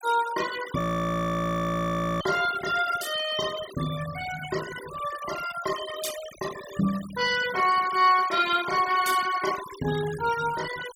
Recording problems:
noise reduction artefacts; signal-to-artefact ratio 13 dB
frozen audio; at 1 s for 1.5 s

